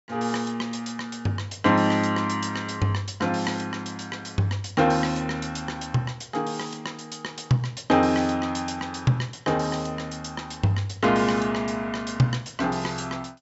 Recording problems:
treble missing; nothing above 8 kHz

